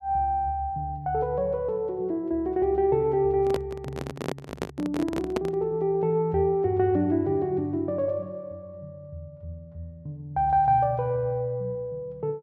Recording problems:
microphone handling noise; from 3.5 to 5.5 s; peak +1 dB vs average level

